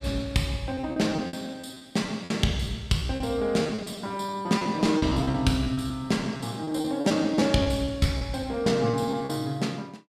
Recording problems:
lost packets; 15% of the sound replaced, filled with repeated pitch periods

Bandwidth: 14.5 kHz